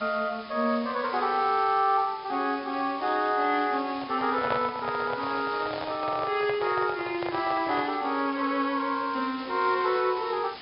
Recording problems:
treble missing; nothing above 4.9 kHz
codec artefacts; G.722, log-spectral distance 11 dB
hiss; slope -1 dB per octave, SNR 17 dB
handling noise; from 4 to 8 s; peak 0 dB vs average level

